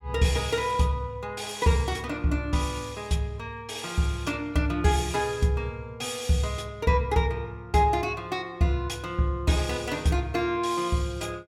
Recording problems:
none

